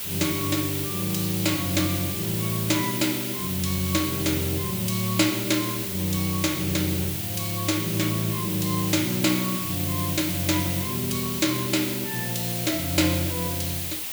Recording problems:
background hiss; SNR 2 dB

